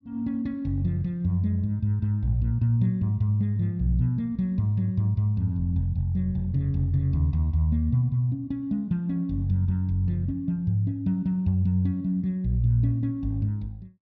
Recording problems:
none

